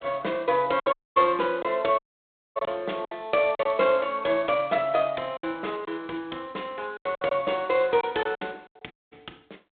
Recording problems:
telephone audio; 220 Hz to 3.7 kHz, G.726
lost packets; 7% of the sound replaced, filled with silence
audio cutting out; at 1 s, at 2 s for 0.5 s and at 9 s

